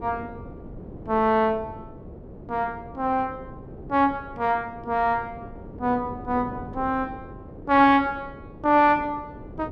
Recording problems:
wind noise; below 410 Hz, SNR 17 dB

